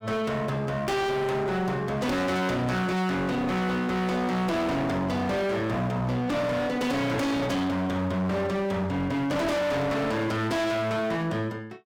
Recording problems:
distortion; hard clipping, signal-to-distortion ratio 6 dB

